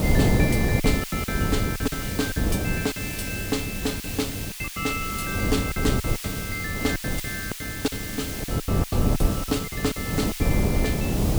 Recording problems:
mains hum; 50 Hz, harmonics up to 700 Hz, SNR 10 dB
background hiss; SNR 3 dB
wind noise; below 290 Hz, SNR -3 dB
lost packets; 12% of the sound replaced, filled with silence

